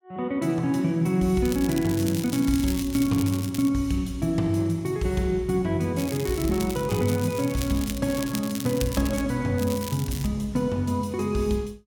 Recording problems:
crackle; from 1.5 to 3.5 s, from 6 to 9 s and at 9.5 s; loose cable, SNR 12 dB

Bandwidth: 17 kHz